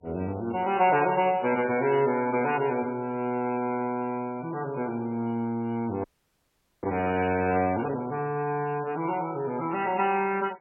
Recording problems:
lossy codec; MP3, log-spectral distance 3 dB, nothing above 2.4 kHz
frozen audio; at 6 s for 1 s

